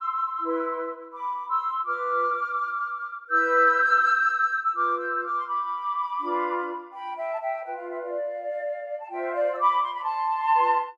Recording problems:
none

